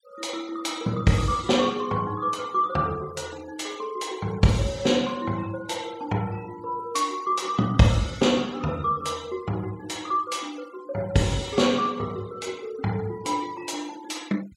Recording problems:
noise reduction artefacts; signal-to-artefact ratio 22 dB

